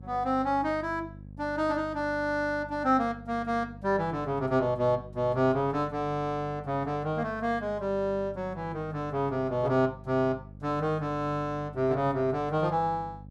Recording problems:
hum; 50 Hz, harmonics up to 550 Hz, SNR 17 dB

